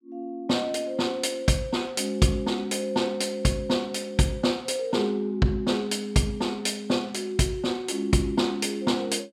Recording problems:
none

